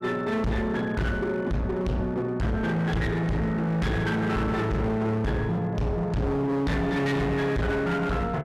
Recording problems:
distortion; hard clipping, signal-to-distortion ratio 6 dB

